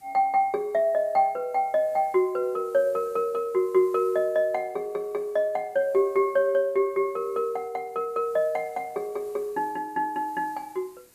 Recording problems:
background hiss; SNR 29 dB

